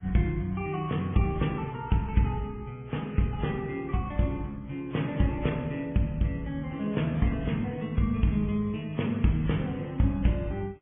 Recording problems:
low-pass filter; nothing above 3.3 kHz
lossy codec; MP3, then AAC, log-spectral distance 3 dB

